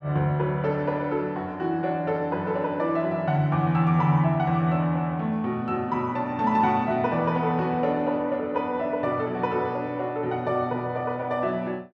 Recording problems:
none

